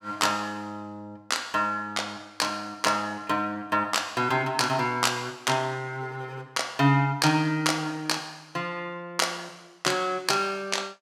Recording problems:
none

